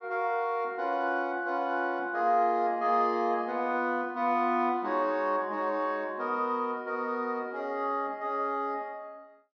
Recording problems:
treble missing; nothing above 6.2 kHz

